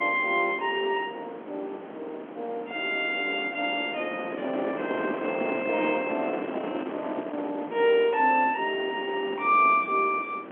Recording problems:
phone line; 240 Hz to 3.4 kHz, G.711
wind on the microphone; below 790 Hz, SNR 10 dB

